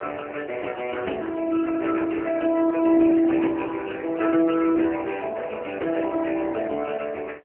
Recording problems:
telephone audio; 260 Hz to 2.7 kHz, AMR-NB

